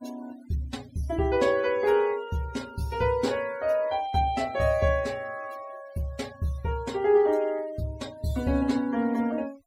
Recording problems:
noise reduction artefacts; signal-to-artefact ratio 22 dB

